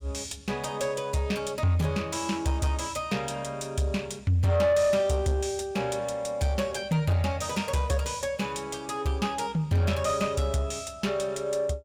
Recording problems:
distortion; soft clipping, signal-to-distortion ratio 12 dB

